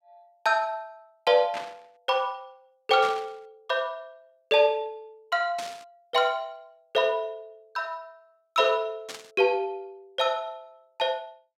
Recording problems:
static burst; 4 times, first at 1.5 s; peak -6 dB vs average level

